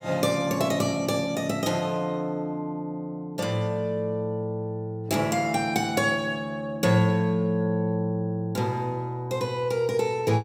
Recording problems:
none

